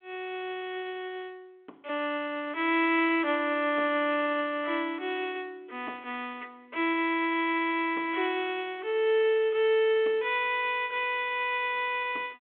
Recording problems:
phone line; 260 Hz to 3.4 kHz, G.726

